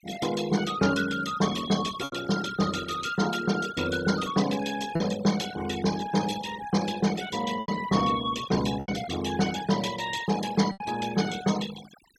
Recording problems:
noise reduction artefacts; signal-to-artefact ratio 12 dB
lost packets; 3% of the sound replaced, filled with repeated pitch periods

